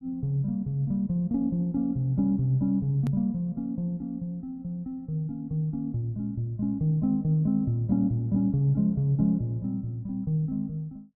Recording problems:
click at an edit; at 3 s

